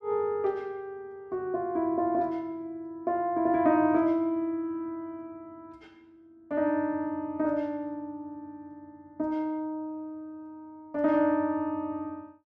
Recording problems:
none

